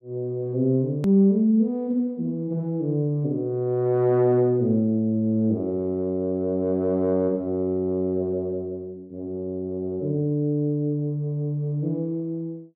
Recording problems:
click at an edit; at 1 s

